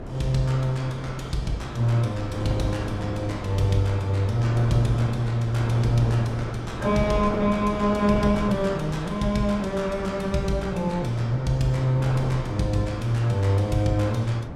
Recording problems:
wind on the microphone; below 480 Hz, SNR 10 dB

